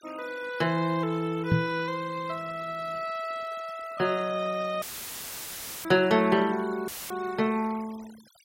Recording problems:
noise reduction artefacts; signal-to-artefact ratio 20 dB
microphone bump; at 1.5 s; peak +7 dB vs average level
audio cutting out; at 5 s for 1 s and at 7 s; filled with static

